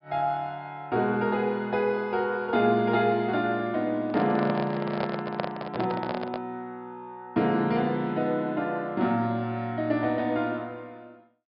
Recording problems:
low-pass filter; nothing above 5.2 kHz
microphone handling noise; from 4 to 6.5 s; peak +1 dB vs average level

